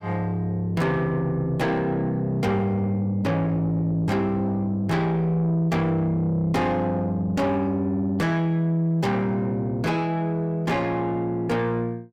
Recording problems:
distortion; soft clipping, signal-to-distortion ratio 10 dB

